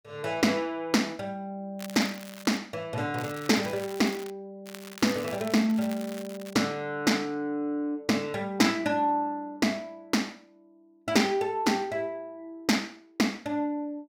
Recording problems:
crackle; at 2 s, from 3 to 4.5 s and from 4.5 to 6.5 s; loose cable, SNR 16 dB

